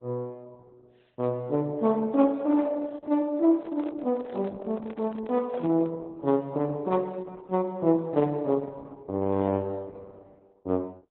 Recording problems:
lossy compression; AAC, then Opus, log-spectral distance 2 dB, nothing above 3.9 kHz
handling noise; from 3.5 to 6 s; peak -10 dB vs average level

